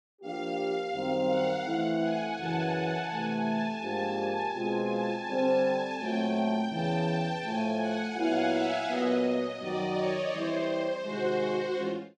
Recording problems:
none

